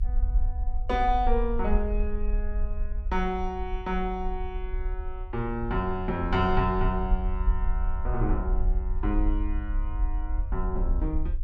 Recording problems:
rumble; below 50 Hz, SNR 1 dB

